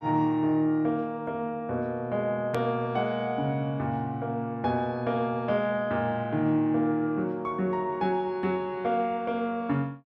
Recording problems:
edit click; at 2.5 s

